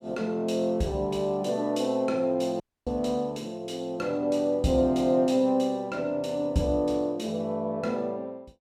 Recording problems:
dropout; at 2.5 s

